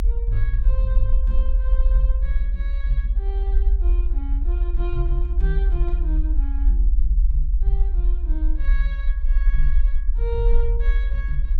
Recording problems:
low-frequency rumble; below 44 Hz, strongest tone 42 Hz, SNR -12 dB

